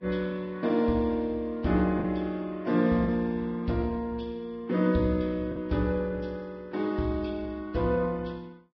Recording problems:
codec artefacts; Vorbis, log-spectral distance 3 dB, nothing above 10.7 kHz
packet loss; 1.4% of the sound replaced, filled with the last packet

